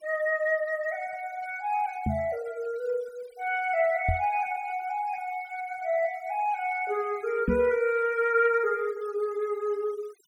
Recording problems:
noise reduction artefacts; signal-to-artefact ratio 24 dB
microphone thump; at 2 s, at 4 s and at 7.5 s; peak +5 dB vs average level

